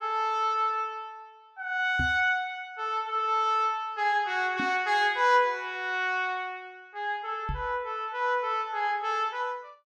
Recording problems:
microphone thump; at 2 s, at 4.5 s and at 7.5 s; peak -2 dB vs average level

